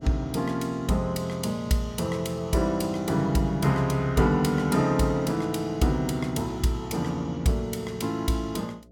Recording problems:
hum; 60 Hz, harmonics up to 660 Hz, SNR 26 dB

